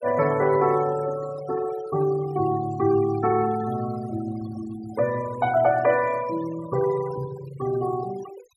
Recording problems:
noise reduction artefacts; signal-to-artefact ratio 16 dB

